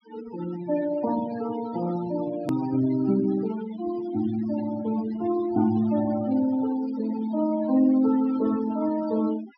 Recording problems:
low-pass filter; nothing above 5.5 kHz
denoising artefacts; signal-to-artefact ratio 14 dB
edit click; at 2.5 s

